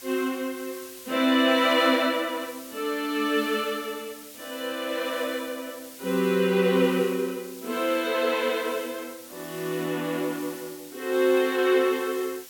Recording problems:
hiss; slope +2 dB per octave, SNR 17 dB

